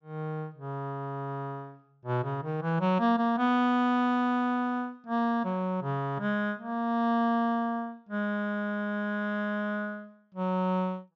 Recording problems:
treble cut off; nothing above 7.4 kHz

